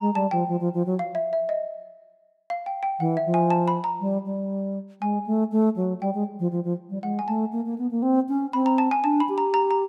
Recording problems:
none

